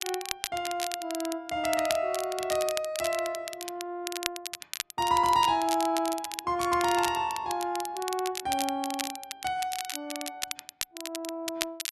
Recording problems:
crackling; vinyl, SNR 7 dB

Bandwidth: 12.5 kHz